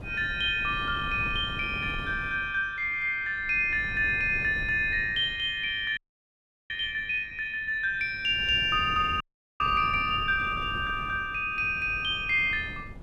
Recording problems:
wind on the microphone; below 240 Hz, SNR 15 dB
frozen audio; at 6 s for 0.5 s and at 9 s

